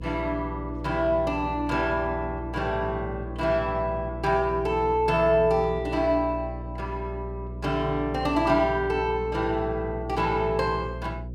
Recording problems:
hum; 60 Hz, harmonics up to 540 Hz, SNR 11 dB

